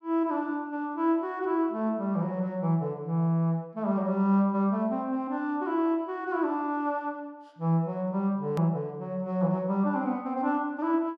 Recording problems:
edit click; at 8.5 s

